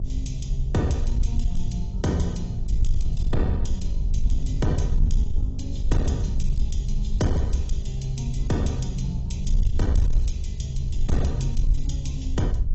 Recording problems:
lossy codec; AAC, log-spectral distance 2 dB, nothing above 7.8 kHz
distortion; soft clipping, signal-to-distortion ratio 10 dB
hum; 50 Hz, harmonics up to 450 Hz, SNR 9 dB
rumble; below 56 Hz, SNR 0 dB

